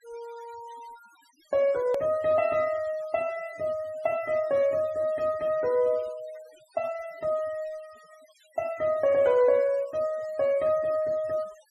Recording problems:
noise reduction artefacts; signal-to-artefact ratio 24 dB
hard cut with a click; at 2 s

